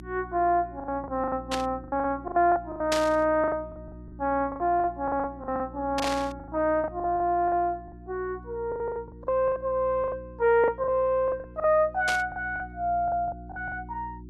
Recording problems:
hum; 60 Hz, harmonics up to 360 Hz, SNR 18 dB
packet loss; 15% of the sound replaced, filled with the last packet
burst of static; 4 times, first at 1.5 s; peak +2 dB vs average level

